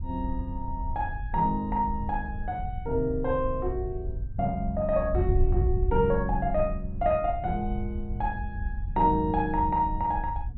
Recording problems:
treble cut off; nothing above 4.2 kHz
wind noise; below 80 Hz, SNR 5 dB

